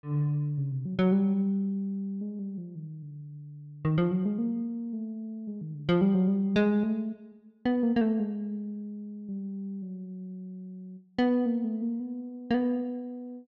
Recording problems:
none

